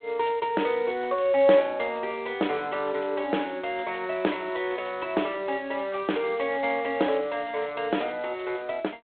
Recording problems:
telephone audio; 240 Hz to 3.6 kHz, G.726

